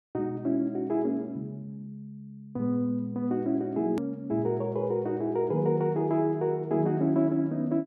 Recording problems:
hard cut with a click; at 4 s

